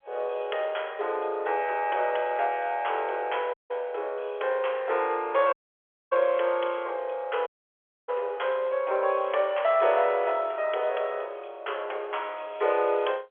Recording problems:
telephone audio; 370 Hz to 3.4 kHz, G.711
dropout; at 3.5 s, at 5.5 s for 0.5 s and at 7.5 s for 0.5 s

